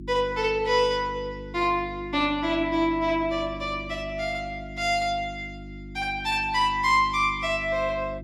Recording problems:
electrical hum; 50 Hz, harmonics up to 350 Hz, SNR 15 dB

